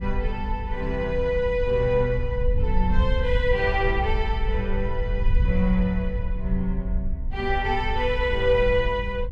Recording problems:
wind on the microphone; below 62 Hz, SNR 3 dB

